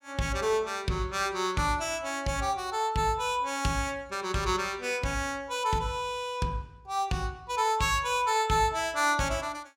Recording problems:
none

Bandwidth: 16.5 kHz